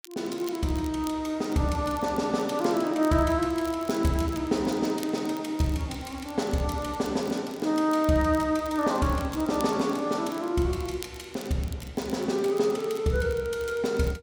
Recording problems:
crackle; vinyl, SNR 21 dB

